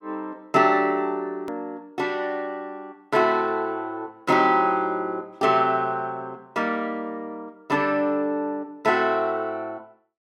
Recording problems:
hard cut with a click; at 1.5 s

